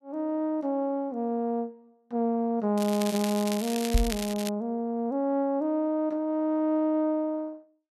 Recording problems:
crackling; from 3 to 4.5 s; loose cable, SNR 9 dB
microphone bump; at 4 s; peak +6 dB vs average level

